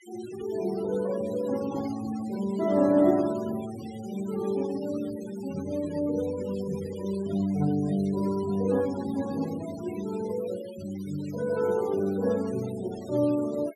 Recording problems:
noise reduction artefacts; signal-to-artefact ratio 18 dB

